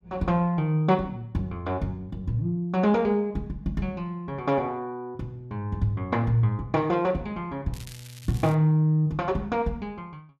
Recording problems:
crackle; at 7.5 s; loose cable, SNR 20 dB

